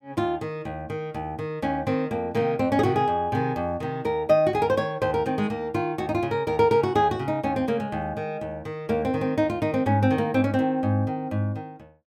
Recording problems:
none

